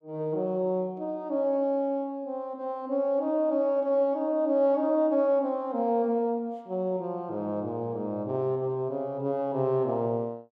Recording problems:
none

